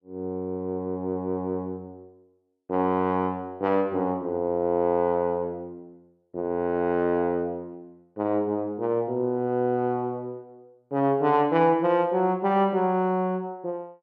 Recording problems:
none

